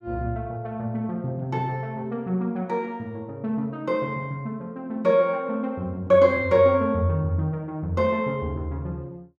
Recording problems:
none

